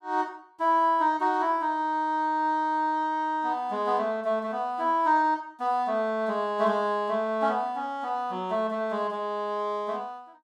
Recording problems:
none

